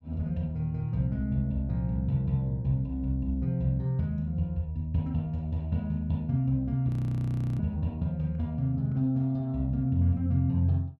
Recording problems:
frozen audio; at 7 s for 0.5 s

